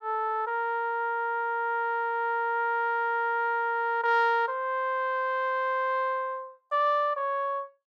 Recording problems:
none

